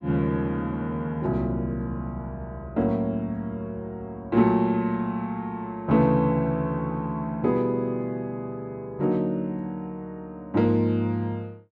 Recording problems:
none

